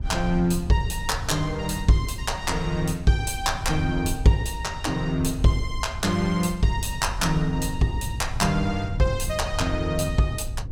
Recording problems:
rumble; below 80 Hz, SNR 12 dB
wind noise; below 120 Hz, SNR 12 dB

